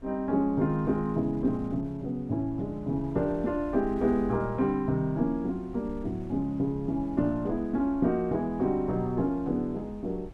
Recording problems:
wind noise; below 110 Hz, SNR 18 dB

